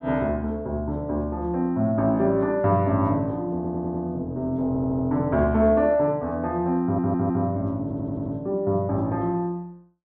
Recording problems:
audio stuttering; 4 times, first at 3.5 s

